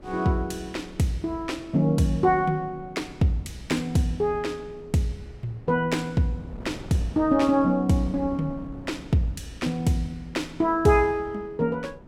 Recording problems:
wind noise; below 310 Hz, SNR 20 dB

